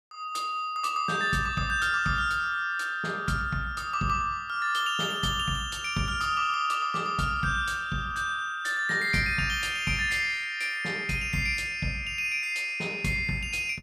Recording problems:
none

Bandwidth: 15.5 kHz